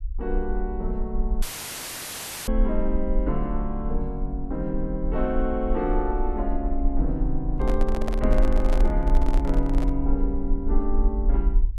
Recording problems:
low-frequency rumble; below 44 Hz, SNR 0 dB
audio cutting out; at 1.5 s for 1 s
microphone handling noise; from 7.5 to 10 s; peak 0 dB vs average level

